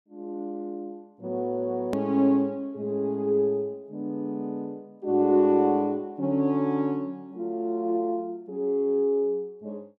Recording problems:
click at an edit; at 2 s

